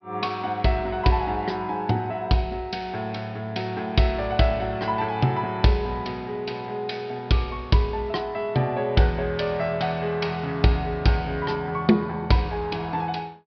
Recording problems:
treble missing; nothing above 5.5 kHz

